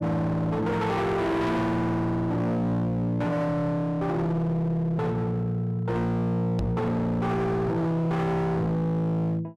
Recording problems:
distorted audio; hard clipping, signal-to-distortion ratio 7 dB
knock on the microphone; at 6.5 s; peak +3 dB vs average level

